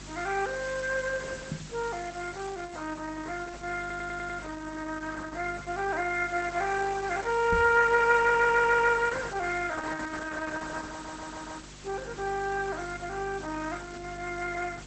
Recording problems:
lossy codec; Opus, log-spectral distance 14 dB, nothing above 8 kHz
hum; 50 Hz, harmonics up to 400 Hz, SNR 20 dB
hiss; SNR 17 dB
knock on the microphone; at 1.5 s and at 7.5 s; peak -2 dB vs average level
stutter; at 4 s, at 8 s and at 11 s

